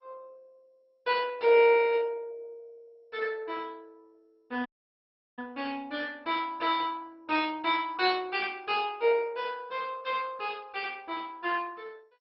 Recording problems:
codec artefacts; MP2, log-spectral distance 3 dB
audio cutting out; at 4.5 s for 0.5 s

